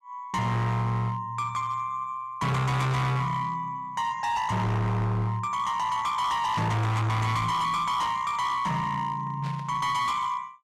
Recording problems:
distorted audio; hard clipping, signal-to-distortion ratio 6 dB
burst of static; 4 times, first at 3 s; peak -11 dB vs average level

